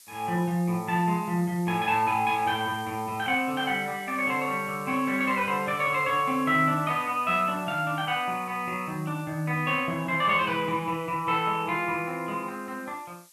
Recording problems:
background hiss; SNR 22 dB

